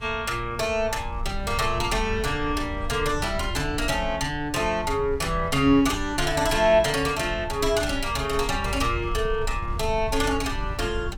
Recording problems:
wind noise; below 84 Hz, SNR 10 dB

